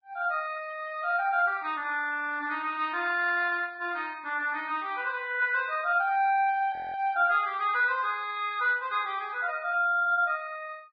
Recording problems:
lossy compression; Vorbis, log-spectral distance 2 dB
frozen audio; at 6.5 s

